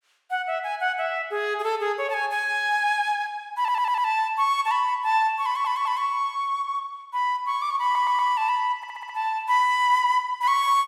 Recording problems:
stutter; 4 times, first at 3.5 s

